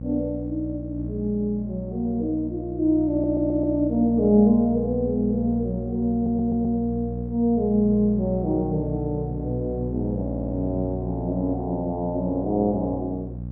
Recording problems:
mains hum; 60 Hz, harmonics up to 540 Hz, SNR 8 dB
audio stuttering; at 3 s, at 6 s and at 10 s

